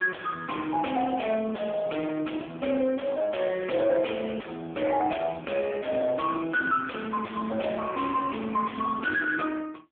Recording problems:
phone line; 240 Hz to 2.4 kHz, AMR-NB
distortion; soft clipping, signal-to-distortion ratio 9 dB

